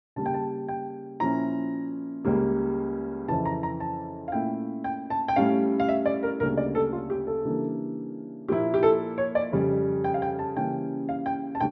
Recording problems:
low-pass filter; nothing above 6.1 kHz

